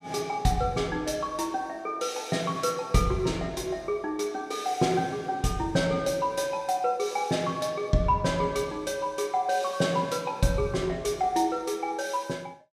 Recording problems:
none

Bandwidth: 14.5 kHz